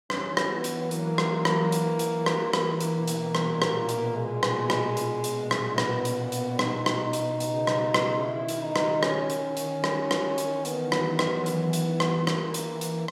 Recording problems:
none

